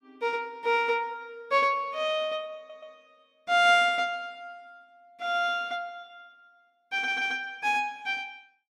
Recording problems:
stutter; at 2.5 s and at 7 s

